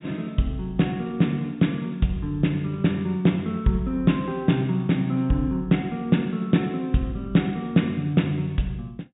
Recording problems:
low-pass filter; nothing above 4 kHz

